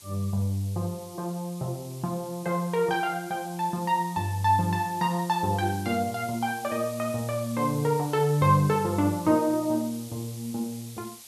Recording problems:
background hiss; SNR 17 dB

